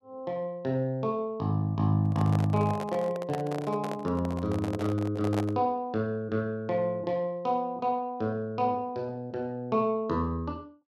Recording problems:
microphone handling noise; from 2 to 5.5 s; peak -1 dB vs average level

